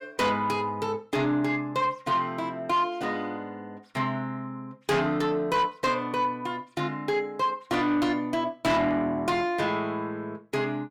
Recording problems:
distortion; soft clipping, signal-to-distortion ratio 11 dB

